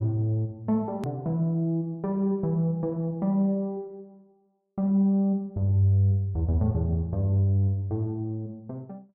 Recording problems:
edit click; at 1 s

